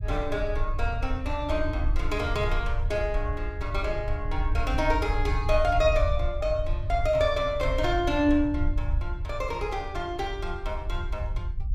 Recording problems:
low-frequency rumble; below 72 Hz, SNR 3 dB

